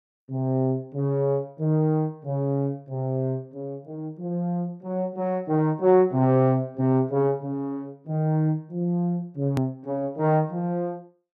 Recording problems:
edit click; at 9.5 s

